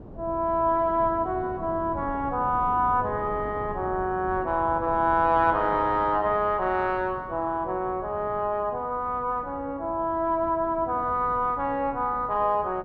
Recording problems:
wind on the microphone; below 370 Hz, SNR 16 dB

